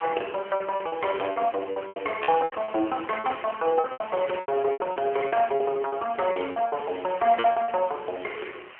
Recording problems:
telephone audio; 300 Hz to 3.1 kHz, AMR-NB
background hiss; SNR 18 dB
lost packets; 13% of the sound replaced, filled with repeated pitch periods

